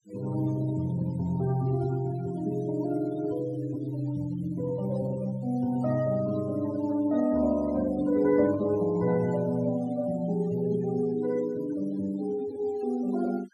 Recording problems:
noise reduction artefacts; signal-to-artefact ratio 19 dB

